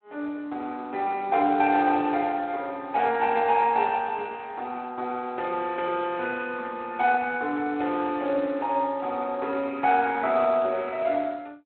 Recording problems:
telephone audio; 280 Hz to 3.7 kHz, Speex

